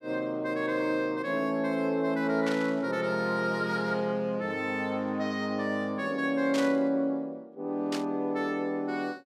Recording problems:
static burst; at 2.5 s, at 6.5 s and at 8 s; peak -3 dB vs average level

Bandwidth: 14.5 kHz